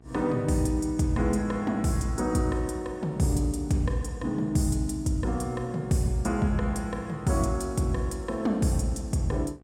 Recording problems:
hum; 60 Hz, harmonics up to 1.6 kHz, SNR 27 dB

